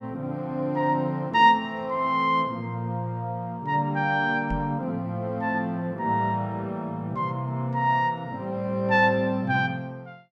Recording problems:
microphone thump; at 4.5 s; peak -2 dB vs average level

